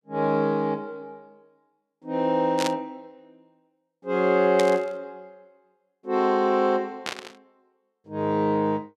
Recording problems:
static burst; at 2.5 s, at 4.5 s and at 7 s; peak -2 dB vs average level

